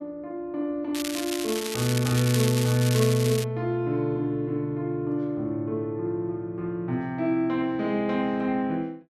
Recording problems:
crackle; from 1 to 3.5 s; loose cable, SNR 6 dB

